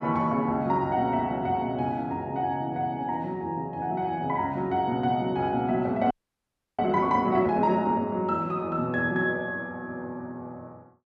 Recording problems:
frozen audio; at 6 s for 0.5 s

